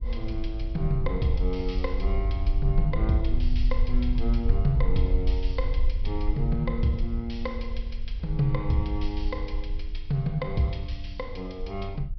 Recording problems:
treble cut off; nothing above 5.5 kHz
rumble; below 52 Hz, SNR 1 dB

